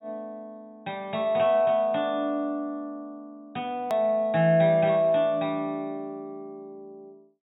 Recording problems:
treble cut off; nothing above 4 kHz
edit click; at 4 s

